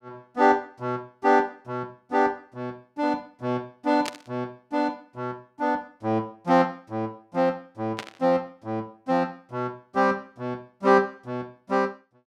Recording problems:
static burst; at 4 s and at 8 s; peak -2 dB vs average level

